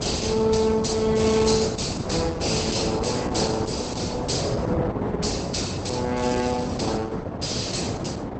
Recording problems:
lossy codec; Opus, log-spectral distance 6 dB, nothing above 8.2 kHz
hum; 60 Hz, harmonics up to 720 Hz, SNR 15 dB
wind noise; below 560 Hz, SNR 3 dB

